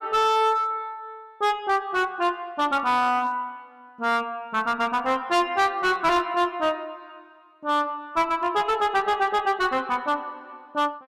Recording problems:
distortion; hard clipping, uneven, signal-to-distortion ratio 10 dB

